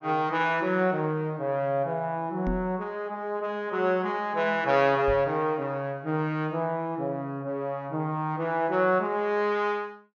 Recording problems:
low-pass filter; nothing above 6.8 kHz
knock on the microphone; at 2.5 s and at 5 s; peak -2 dB vs average level

